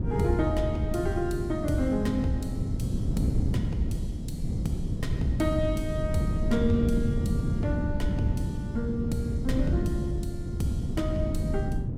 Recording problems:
wind noise; below 190 Hz, SNR -1 dB

